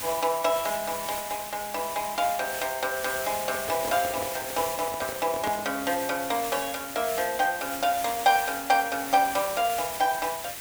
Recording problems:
background hiss; slope 0 dB per octave, SNR 7 dB
microphone handling noise; from 3.5 to 6 s; peak -2 dB vs average level

